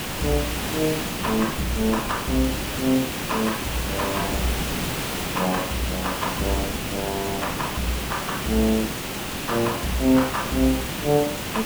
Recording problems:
hiss; slope -3 dB per octave, SNR 2 dB
wind noise; below 310 Hz, SNR 14 dB

